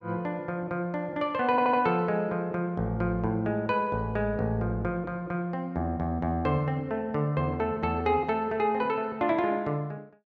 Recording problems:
audio stuttering; at 1.5 s

